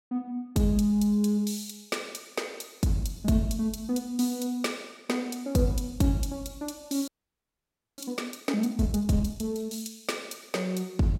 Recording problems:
audio freezing; at 7 s for 1 s

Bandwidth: 16 kHz